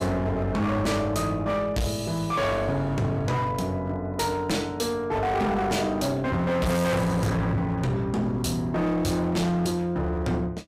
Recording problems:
distorted audio; hard clipping, signal-to-distortion ratio 6 dB

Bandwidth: 15.5 kHz